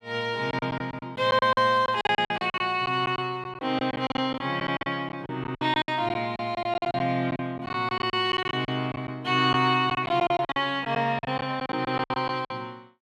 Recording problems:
packet loss; 16% of the sound replaced, filled with silence

